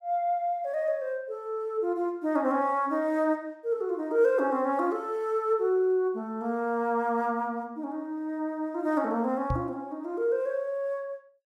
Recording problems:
knock on the microphone; at 9.5 s; peak +1 dB vs average level

